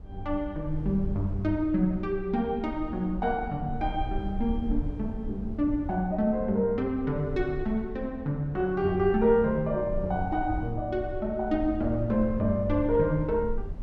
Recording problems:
low-frequency rumble; below 72 Hz, SNR 11 dB

